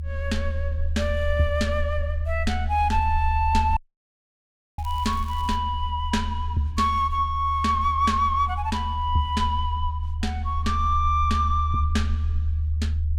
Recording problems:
low-frequency rumble; below 78 Hz, strongest tone 76 Hz, SNR 3 dB
audio cutting out; at 4 s for 1 s
crackling; at 5 s; loose cable, SNR 24 dB

